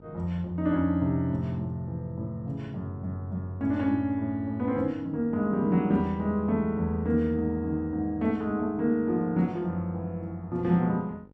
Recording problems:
hum; 50 Hz, harmonics up to 1 kHz, SNR 26 dB

